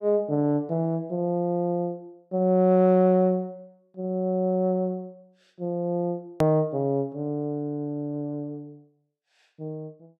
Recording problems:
click at an edit; at 6.5 s

